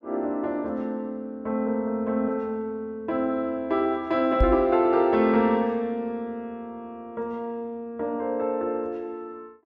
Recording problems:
knock on the microphone; at 4.5 s; peak +6 dB vs average level

